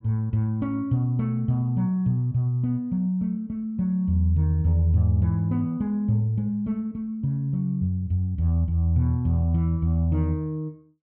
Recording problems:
none

